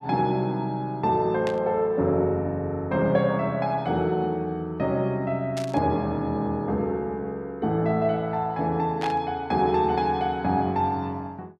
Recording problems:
burst of static; at 1.5 s, at 5.5 s and at 9 s; peak -6 dB vs average level

